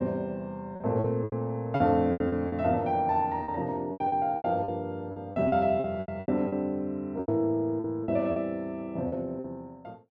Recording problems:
packet loss; 13% of the sound replaced, filled with repeated pitch periods

